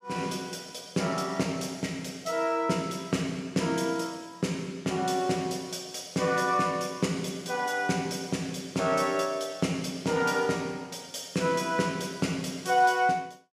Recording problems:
none

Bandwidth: 14.5 kHz